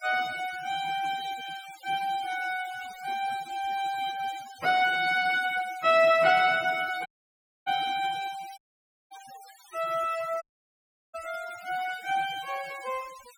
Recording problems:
denoising artefacts; signal-to-artefact ratio 18 dB
audio cutting out; at 7 s for 0.5 s, at 8.5 s for 0.5 s and at 10 s for 0.5 s

